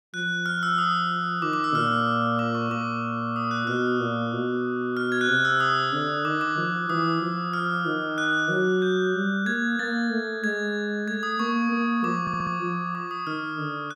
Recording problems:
stutter; at 12 s

